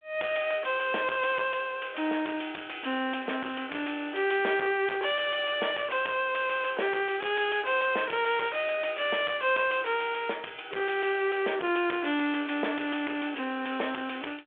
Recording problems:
phone line; 280 Hz to 3.5 kHz, G.726
distortion; soft clipping, signal-to-distortion ratio 9 dB

